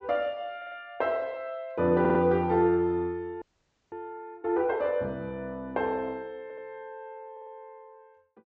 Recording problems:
low-pass filter; nothing above 8 kHz
stutter; 4 times, first at 0.5 s
frozen audio; at 3.5 s for 0.5 s

